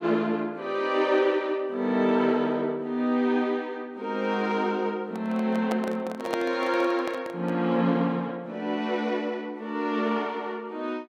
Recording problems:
handling noise; from 5 to 7.5 s; peak +1 dB vs average level

